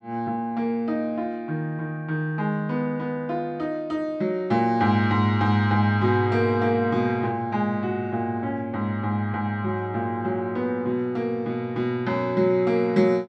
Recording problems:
none

